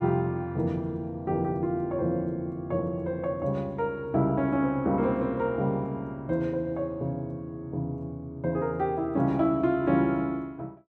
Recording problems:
none

